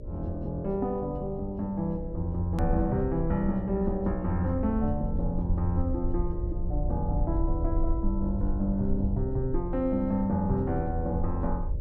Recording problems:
hum; 60 Hz, harmonics up to 600 Hz, SNR 14 dB
rumble; below 62 Hz, SNR 5 dB
click at an edit; at 2.5 s

